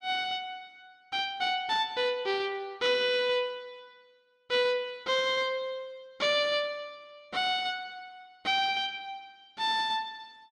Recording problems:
none

